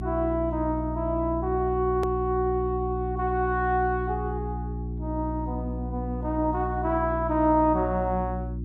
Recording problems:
mains hum; 60 Hz, harmonics up to 360 Hz, SNR 6 dB
hard cut with a click; at 2 s

